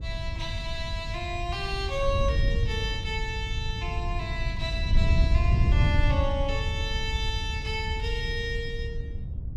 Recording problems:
wind on the microphone; below 94 Hz, SNR -2 dB

